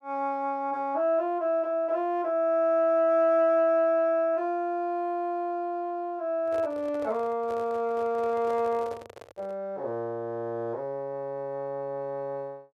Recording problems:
microphone handling noise; from 6.5 to 9.5 s; peak -10 dB vs average level

